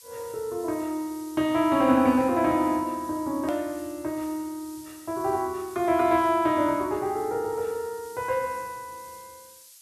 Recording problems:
background hiss; slope +5 dB per octave, SNR 21 dB
edit click; at 3.5 s

